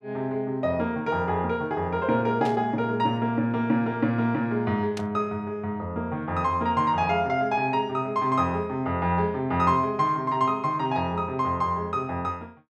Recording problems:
static burst; at 2.5 s and at 5 s; peak -7 dB vs average level

